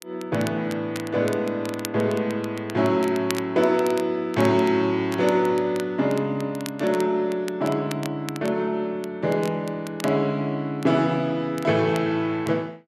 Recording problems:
crackle; vinyl, SNR 17 dB

